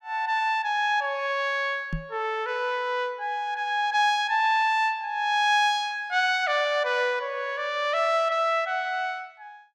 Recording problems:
microphone bump; at 2 s; peak -2 dB vs average level

